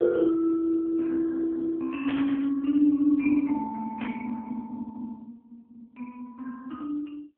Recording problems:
telephone audio; 240 Hz to 2.6 kHz, AMR-NB
static burst; at 2 s and at 4 s; peak -7 dB vs average level

